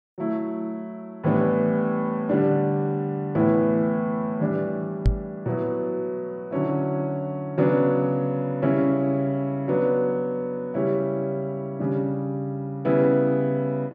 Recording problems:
knock on the microphone; at 5 s; peak +7 dB vs average level

